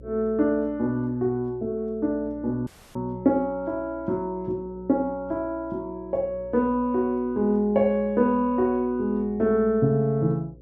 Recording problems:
hum; 60 Hz, harmonics up to 540 Hz, SNR 23 dB
dropout; at 2.5 s

